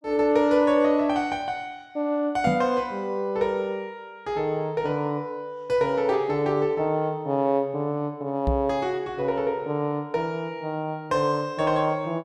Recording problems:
microphone bump; at 2.5 s and at 8.5 s; peak +3 dB vs average level

